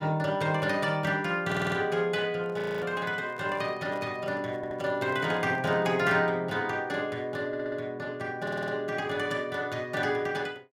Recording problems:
stutter; 4 times, first at 1.5 s
handling noise; from 2.5 to 6 s; peak -11 dB vs average level
audio freezing; at 2.5 s

